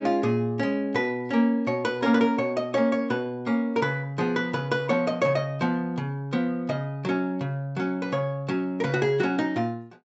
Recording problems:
treble missing; nothing above 8 kHz

